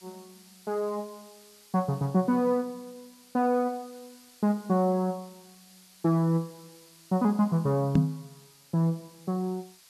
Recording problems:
hiss; slope +2 dB per octave, SNR 25 dB
microphone bump; at 8 s; peak +9 dB vs average level

